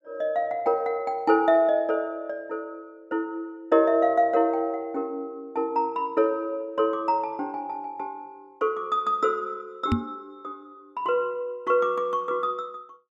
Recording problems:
microphone thump; at 10 s; peak +6 dB vs average level

